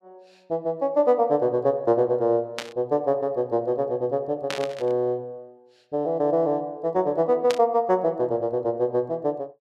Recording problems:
burst of static; at 2.5 s, at 4.5 s and at 7.5 s; peak -2 dB vs average level

